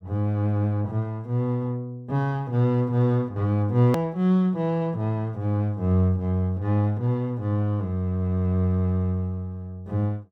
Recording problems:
edit click; at 4 s

